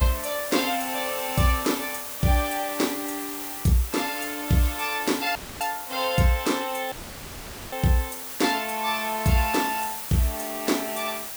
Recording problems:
hiss; SNR 7 dB
dropout; at 5.5 s and at 7 s for 1 s

